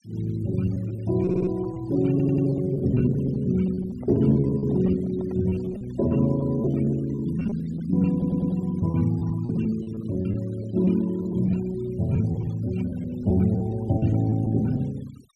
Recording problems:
noise reduction artefacts; signal-to-artefact ratio 23 dB
packet loss; 12% of the sound replaced, filled with repeated pitch periods
audio stuttering; at 1 s, at 2 s and at 8 s
microphone handling noise; from 4 to 6 s; peak -14 dB vs average level

